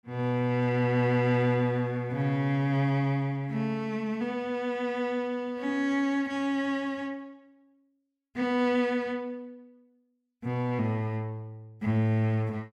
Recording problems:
none

